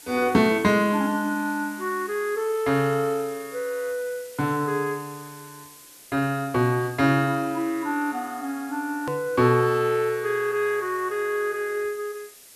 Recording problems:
hiss; SNR 20 dB
hard cut with a click; at 9 s

